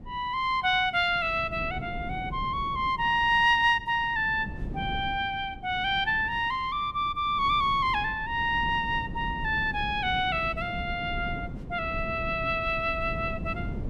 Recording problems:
wind on the microphone; below 210 Hz, SNR 13 dB

